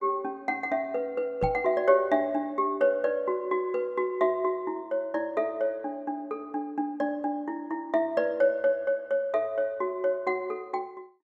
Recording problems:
microphone bump; at 1.5 s; peak 0 dB vs average level

